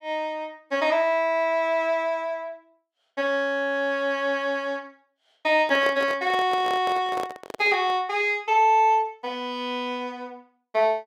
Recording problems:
microphone handling noise; from 5.5 to 8 s; peak -4 dB vs average level

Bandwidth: 16.5 kHz